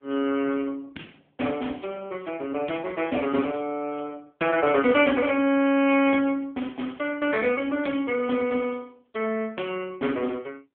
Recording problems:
telephone audio; 170 Hz to 3.4 kHz, AMR-NB

